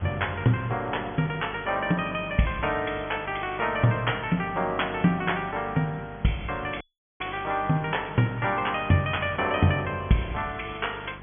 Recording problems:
treble missing; nothing above 3.4 kHz
hum; 50 Hz, harmonics up to 800 Hz, SNR 19 dB
background hiss; SNR 20 dB
dropout; at 7 s

